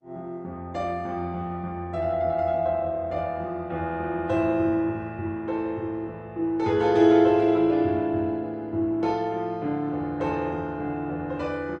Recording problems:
codec artefacts; MP3, then Opus, log-spectral distance 2 dB

